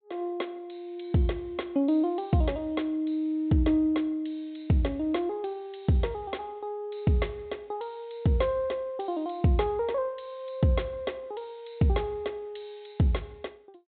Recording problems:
treble cut off; nothing above 4 kHz

